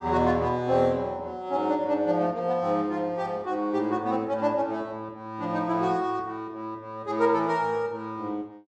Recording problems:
none

